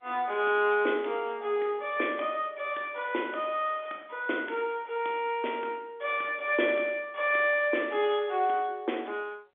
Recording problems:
phone line; 260 Hz to 3.5 kHz, G.711

